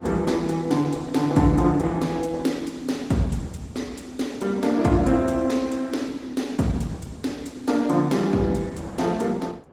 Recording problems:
codec artefacts; Opus, log-spectral distance 3 dB, nothing above 19 kHz
wind noise; below 680 Hz, SNR 24 dB

